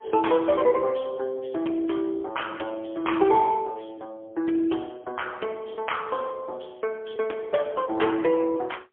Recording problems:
telephone audio; 280 Hz to 3.3 kHz, AMR-NB, then MP3

